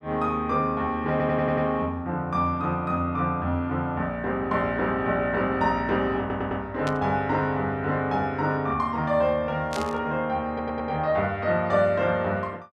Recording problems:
audio stuttering; at 1 s, at 6 s and at 10 s
burst of static; at 7 s and at 9.5 s; peak -5 dB vs average level

